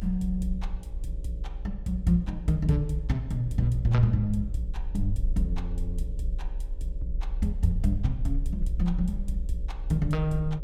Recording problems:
mains hum; 60 Hz, harmonics up to 600 Hz, SNR 24 dB
low-frequency rumble; below 36 Hz, strongest tone 32 Hz, SNR 8 dB

